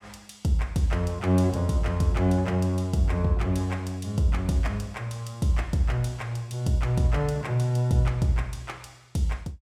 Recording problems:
none

